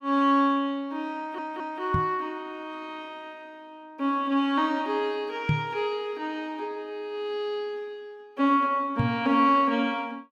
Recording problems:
audio stuttering; at 1 s
knock on the microphone; at 2 s, at 5.5 s and at 9 s; peak +5 dB vs average level

